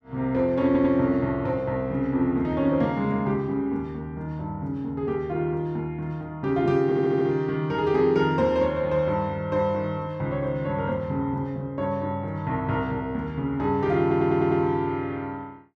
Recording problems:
audio stuttering; at 0.5 s, at 7 s and at 14 s

